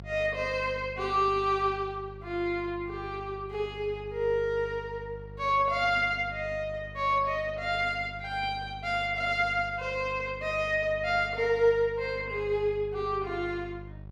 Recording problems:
mains hum; 50 Hz, harmonics up to 750 Hz, SNR 16 dB

